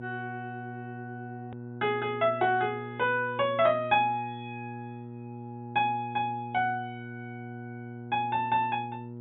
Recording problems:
treble cut off; nothing above 4 kHz
hum; 60 Hz, harmonics up to 840 Hz, SNR 13 dB
click at an edit; at 1.5 s

